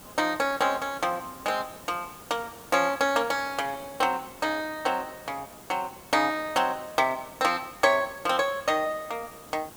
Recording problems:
hiss; SNR 19 dB

